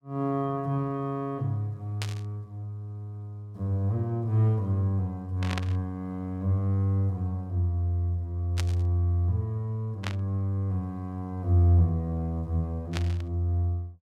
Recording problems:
static burst; 5 times, first at 2 s; peak -1 dB vs average level

